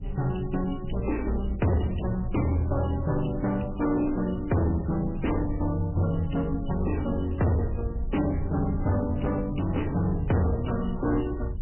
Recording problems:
codec artefacts; MP3, log-spectral distance 5 dB, nothing above 3 kHz
distortion; hard clipping, uneven, signal-to-distortion ratio 10 dB
rumble; below 84 Hz, SNR 11 dB

